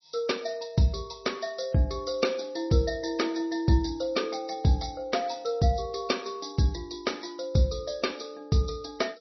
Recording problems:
lossy compression; MP3, log-spectral distance 7 dB, nothing above 5.8 kHz

